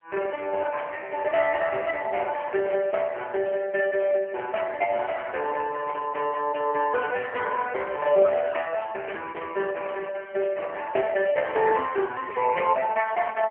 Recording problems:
telephone audio; 320 Hz to 2.8 kHz, AMR-NB

